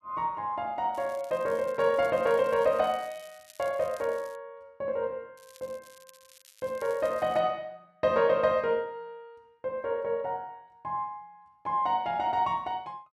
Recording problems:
crackling; from 1 to 4.5 s and from 5.5 to 7.5 s; loose cable, SNR 25 dB

